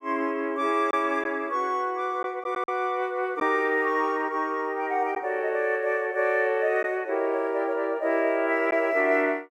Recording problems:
packet loss; 1.5% of the sound replaced, filled with silence

